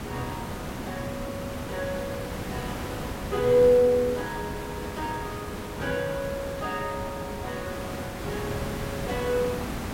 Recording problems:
background hiss; slope -5 dB per octave, SNR 6 dB

